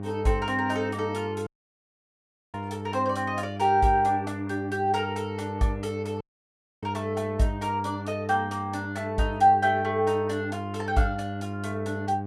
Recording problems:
electrical hum; 50 Hz, harmonics up to 1.1 kHz, SNR 9 dB
dropout; at 1.5 s for 1 s and at 6 s for 0.5 s

